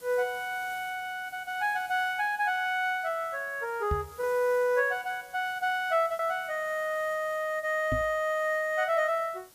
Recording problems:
background hiss; slope -1 dB per octave, SNR 23 dB
packet loss; 1.6% of the sound replaced, filled with repeated pitch periods
microphone thump; at 4 s and at 8 s; peak +1 dB vs average level

